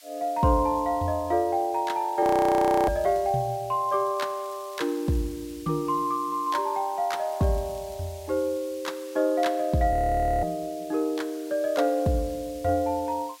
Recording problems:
background hiss; SNR 22 dB
frozen audio; at 2 s for 0.5 s and at 10 s for 0.5 s
crackle; at 3 s, from 4 to 5 s and at 7 s; loose cable, SNR 29 dB

